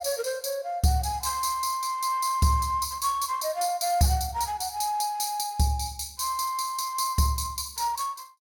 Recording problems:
none

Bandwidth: 17.5 kHz